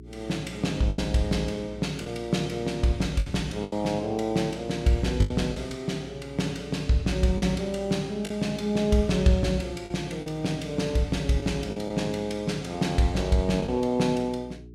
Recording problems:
electrical hum; 60 Hz, harmonics up to 420 Hz, SNR 18 dB
packet loss; 4% of the sound replaced, filled with the last packet

